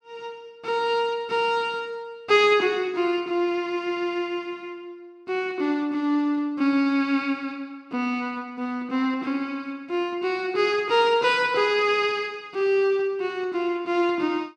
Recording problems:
none

